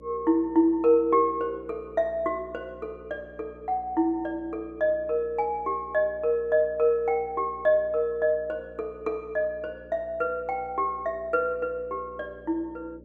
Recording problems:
hum; 60 Hz, harmonics up to 600 Hz, SNR 23 dB

